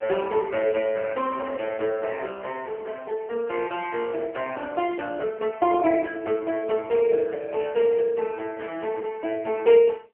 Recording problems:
telephone audio; 320 Hz to 3.1 kHz, AMR-NB

